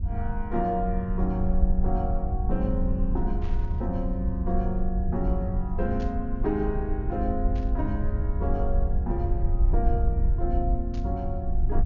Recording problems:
treble missing; nothing above 6.9 kHz
rumble; below 68 Hz, SNR -2 dB
static burst; 4 times, first at 3.5 s; peak -13 dB vs average level

